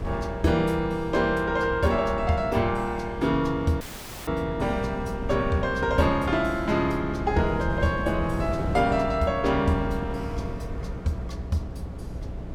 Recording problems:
electrical hum; 60 Hz, harmonics up to 660 Hz, SNR 14 dB
wind on the microphone; below 240 Hz, SNR 10 dB
dropout; at 4 s

